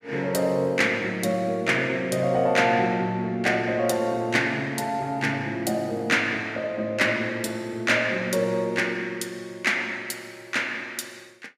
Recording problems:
none

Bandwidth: 15.5 kHz